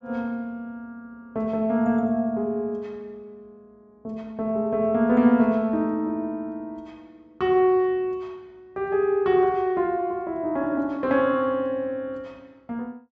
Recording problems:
low-pass filter; nothing above 8 kHz

